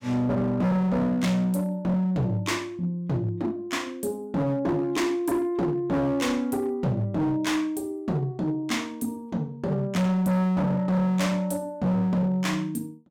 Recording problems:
distortion; hard clipping, signal-to-distortion ratio 7 dB

